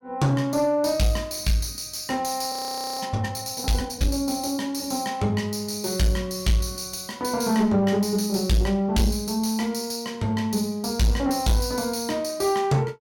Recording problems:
distorted audio; soft clipping, signal-to-distortion ratio 11 dB
audio freezing; at 2.5 s

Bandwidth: 17.5 kHz